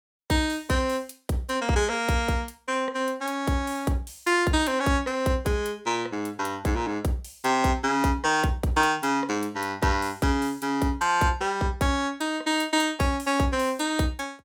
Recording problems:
none

